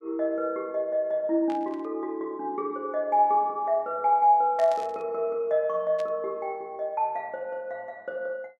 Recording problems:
burst of static; at 1.5 s, at 4.5 s and at 6 s; peak -13 dB vs average level

